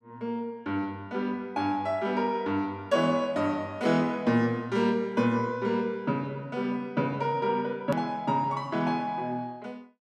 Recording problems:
edit click; at 8 s

